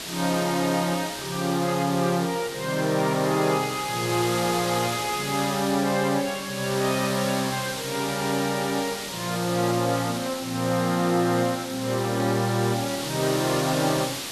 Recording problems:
hiss; slope 0 dB per octave, SNR 7 dB

